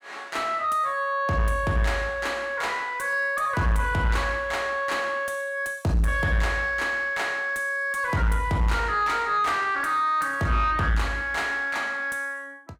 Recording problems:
distorted audio; soft clipping, signal-to-distortion ratio 11 dB

